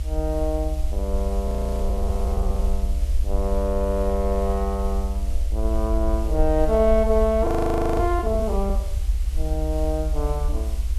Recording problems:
hiss; slope -2 dB per octave, SNR 19 dB
low-frequency rumble; below 64 Hz, SNR 1 dB
frozen audio; at 1.5 s and at 7.5 s for 0.5 s

